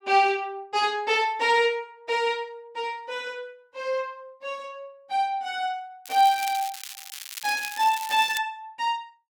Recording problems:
crackle; from 6 to 8.5 s; loose cable, SNR 11 dB

